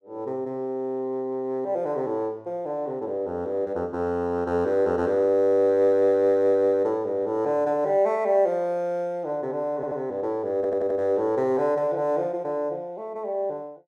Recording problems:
stutter; at 10 s and at 11 s

